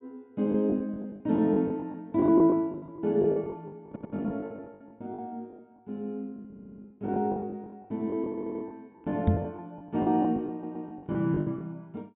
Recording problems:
treble cut off; nothing above 4 kHz
lost packets; 17% of the sound replaced, filled with the last packet
stutter; 4 times, first at 4 s
knock on the microphone; at 9.5 s; peak +9 dB vs average level

